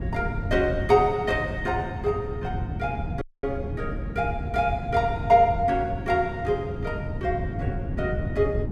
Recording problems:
wind noise; below 180 Hz, SNR 6 dB
dropout; at 3 s

